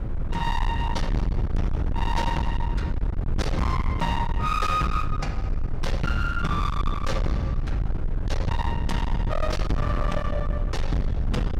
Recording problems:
distortion; hard clipping, signal-to-distortion ratio 6 dB
low-frequency rumble; below 110 Hz, SNR 0 dB

